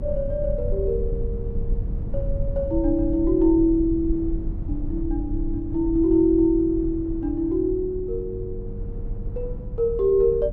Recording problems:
electrical hum; 50 Hz, harmonics up to 700 Hz, SNR 18 dB
rumble; below 56 Hz, strongest tone 28 Hz, SNR 10 dB
wind on the microphone; below 190 Hz, SNR 16 dB

